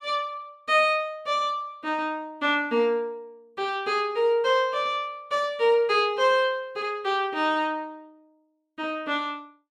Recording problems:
none

